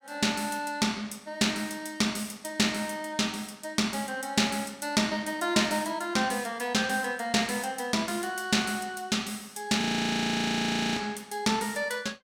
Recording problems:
frozen audio; at 10 s for 1 s

